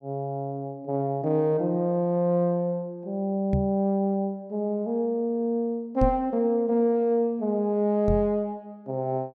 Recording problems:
knock on the microphone; at 3.5 s, at 6 s and at 8 s; peak +3 dB vs average level

